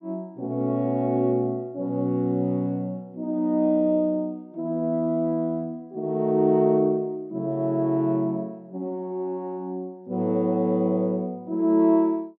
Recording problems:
none

